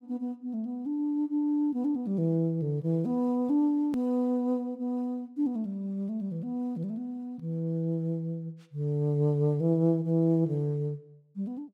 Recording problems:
edit click; at 4 s

